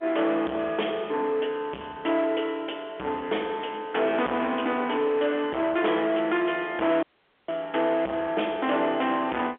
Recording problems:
phone line; 260 Hz to 3.5 kHz, G.711
distortion; soft clipping, signal-to-distortion ratio 7 dB
audio cutting out; at 7 s

